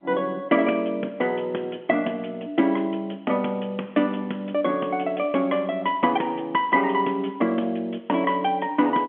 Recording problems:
telephone audio; 220 Hz to 3.5 kHz, G.711

